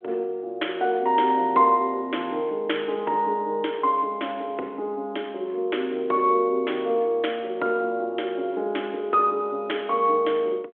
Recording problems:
phone line; 280 Hz to 3.3 kHz, G.726

